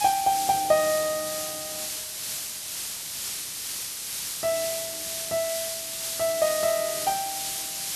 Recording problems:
background hiss; slope +3 dB per octave, SNR 3 dB

